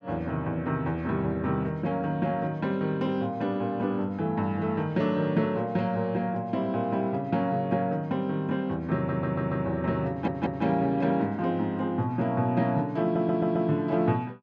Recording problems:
audio stuttering; at 9 s, at 10 s and at 13 s

